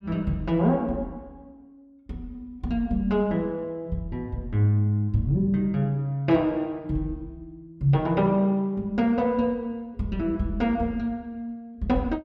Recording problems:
none

